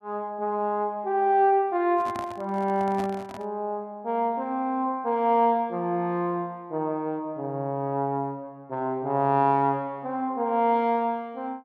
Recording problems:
handling noise; from 2 to 3.5 s; peak -7 dB vs average level

